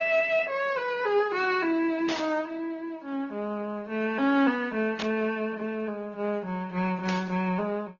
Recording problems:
low-pass filter; nothing above 6.5 kHz
codec artefacts; MP3, then Opus, log-spectral distance 2 dB
burst of static; at 2 s, at 5 s and at 7 s; peak -2 dB vs average level

